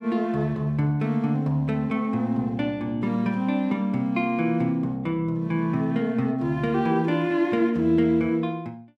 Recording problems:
none

